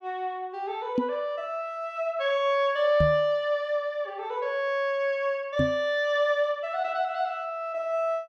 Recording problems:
microphone bump; at 1 s, at 3 s and at 5.5 s; peak +5 dB vs average level

